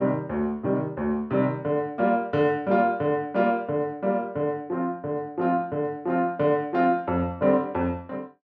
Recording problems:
none

